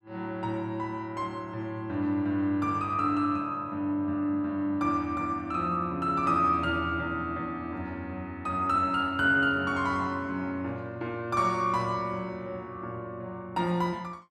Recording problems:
none

